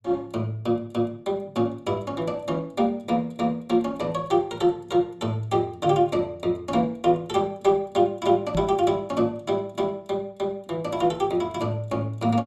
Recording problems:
knock on the microphone; at 8.5 s; peak +1 dB vs average level

